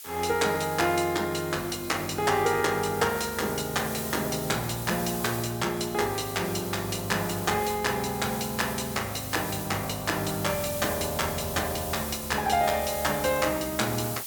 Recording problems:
background hiss; slope +2 dB per octave, SNR 9 dB

